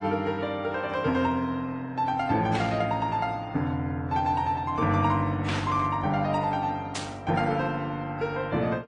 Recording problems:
codec artefacts; MP3, then AAC, log-spectral distance 2 dB, nothing above 9.2 kHz
static burst; at 2.5 s, at 5.5 s and at 7 s; peak -1 dB vs average level

